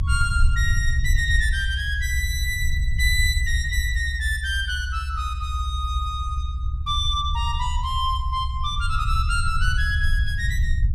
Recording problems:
low-frequency rumble; below 72 Hz, SNR 0 dB

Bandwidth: 13.5 kHz